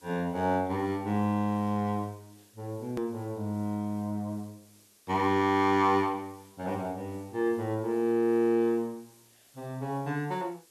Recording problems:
background hiss; SNR 29 dB
hard cut with a click; at 3 s

